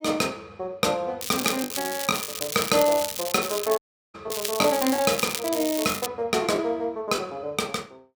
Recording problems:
packet loss; 5% of the sound replaced, filled with the last packet
crackle; from 1 to 4 s and from 4.5 to 6 s; loose cable, SNR 5 dB
audio cutting out; at 4 s

